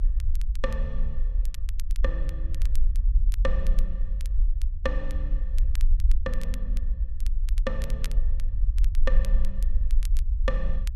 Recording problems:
low-frequency rumble; below 44 Hz, strongest tone 18 Hz, SNR -9 dB
crackling; vinyl, SNR 12 dB

